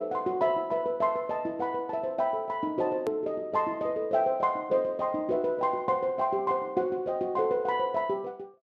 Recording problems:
edit click; at 3 s

